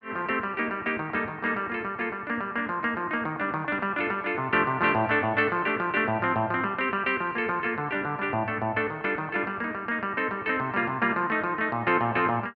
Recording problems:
none

